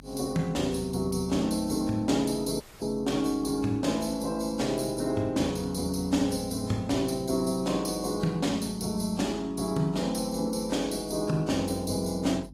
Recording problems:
lossy compression; AAC, log-spectral distance 4 dB, nothing above 14.3 kHz
hum; 50 Hz, harmonics up to 300 Hz, SNR 22 dB
dropout; at 2.5 s

